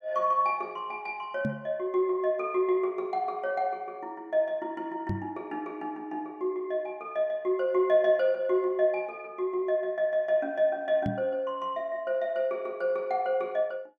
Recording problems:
knock on the microphone; at 1.5 s, at 5 s and at 11 s; peak +2 dB vs average level

